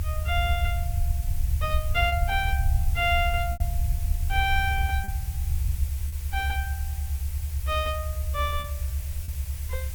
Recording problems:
hiss; slope 0 dB per octave, SNR 13 dB
rumble; below 76 Hz, SNR 0 dB
packet loss; 3% of the sound replaced, filled with repeated pitch periods

